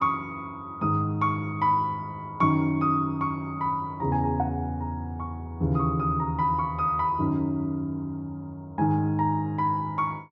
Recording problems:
none

